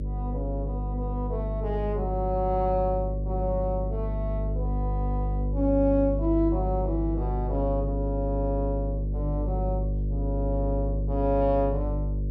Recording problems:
hum; 50 Hz, harmonics up to 550 Hz, SNR 0 dB

